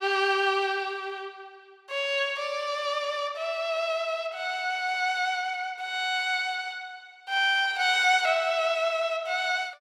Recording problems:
none

